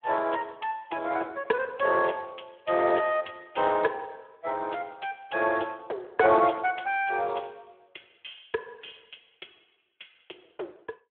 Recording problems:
phone line; 320 Hz to 3.6 kHz, Speex

